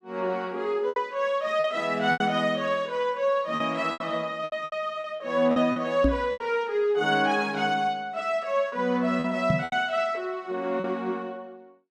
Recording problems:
lost packets; 8% of the sound replaced, filled with repeated pitch periods
knock on the microphone; at 6 s and at 9.5 s; peak +6 dB vs average level

